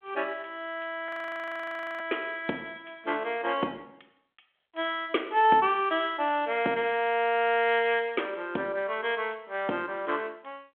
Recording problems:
phone line; 240 Hz to 3.5 kHz, G.726
frozen audio; at 1 s for 1 s

